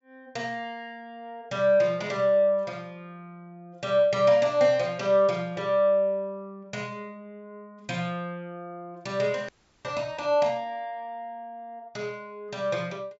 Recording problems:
treble missing; nothing above 8 kHz
frozen audio; at 9.5 s

